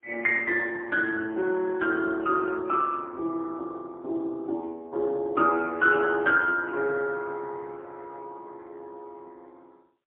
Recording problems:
phone line; 260 Hz to 3.6 kHz, AMR-NB, then MP3

